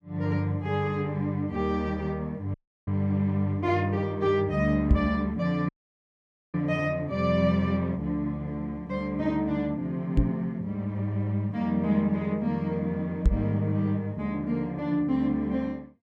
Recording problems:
dropout; at 2.5 s and at 5.5 s for 1 s
microphone thump; at 5 s, at 10 s and at 13 s; peak +9 dB vs average level

